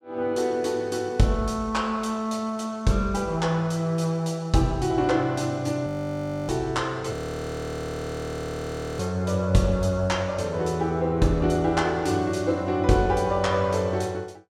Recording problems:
frozen audio; at 6 s for 0.5 s and at 7 s for 2 s

